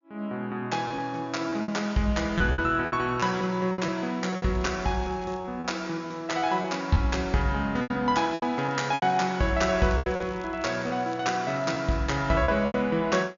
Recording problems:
treble missing; nothing above 7.1 kHz
packet loss; 9% of the sound replaced, filled with repeated pitch periods
crackling; at 4.5 s and from 8.5 to 12 s; loose cable, SNR 27 dB

